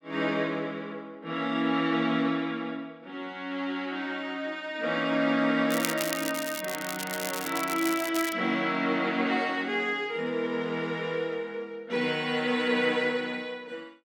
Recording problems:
crackle; from 5.5 to 8.5 s; loose cable, SNR 7 dB

